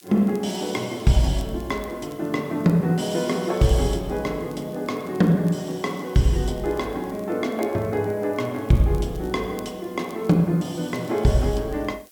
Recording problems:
background hiss; slope +4 dB per octave, SNR 27 dB
crackle; vinyl, SNR 29 dB

